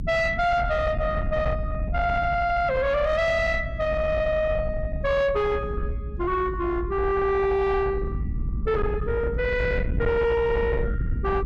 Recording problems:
distorted audio; soft clipping, signal-to-distortion ratio 10 dB
rumble; below 130 Hz, SNR 6 dB

